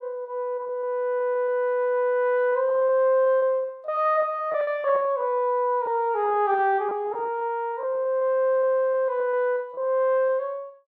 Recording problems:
packet loss; 15% of the sound replaced, filled with repeated pitch periods

